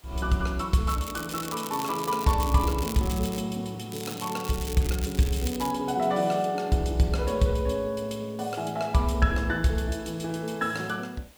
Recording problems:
background hiss; slope -2 dB per octave, SNR 28 dB
crackle; from 1 to 3.5 s and from 4 to 5.5 s; loose cable, SNR 11 dB

